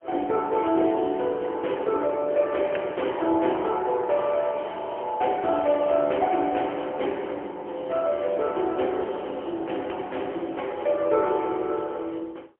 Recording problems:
phone line; 280 Hz to 3.2 kHz, AMR-NB, then MP3

